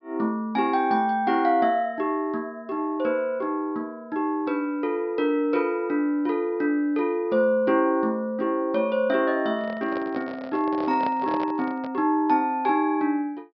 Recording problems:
low-pass filter; nothing above 5.5 kHz
microphone handling noise; from 9.5 to 12 s; peak -4 dB vs average level

